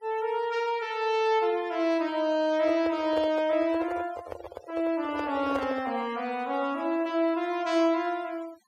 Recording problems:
noise reduction artefacts; signal-to-artefact ratio 22 dB
handling noise; from 2.5 to 6 s; peak -2 dB vs average level

